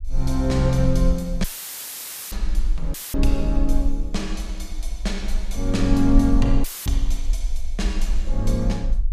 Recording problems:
rumble; below 42 Hz, strongest tone 18 Hz, SNR 3 dB
dropout; at 1.5 s for 1 s, at 3 s and at 6.5 s; filled with static

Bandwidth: 14.5 kHz